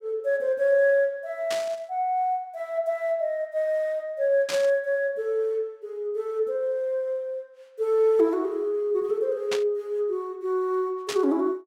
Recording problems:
burst of static; 4 times, first at 1.5 s; peak -1 dB vs average level

